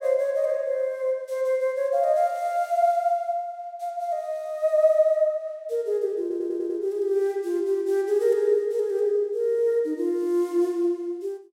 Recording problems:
audio stuttering; at 6 s

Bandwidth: 16 kHz